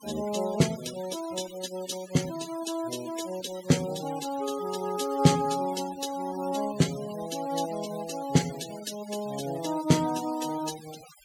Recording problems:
noise reduction artefacts; signal-to-artefact ratio 13 dB

